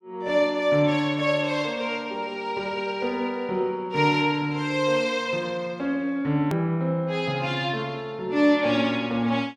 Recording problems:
hard cut with a click; at 6.5 s

